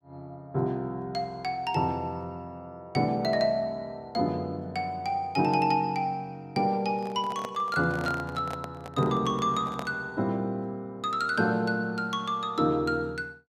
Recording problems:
microphone handling noise; from 7 to 10 s; peak -3 dB vs average level

